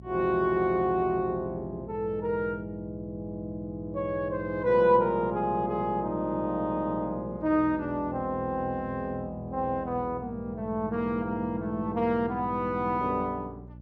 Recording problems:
hum; 60 Hz, harmonics up to 600 Hz, SNR 17 dB

